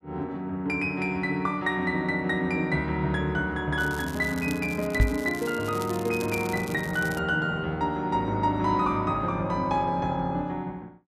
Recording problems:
crackle; from 4 to 7 s; loose cable, SNR 16 dB
knock on the microphone; at 5 s; peak +7 dB vs average level

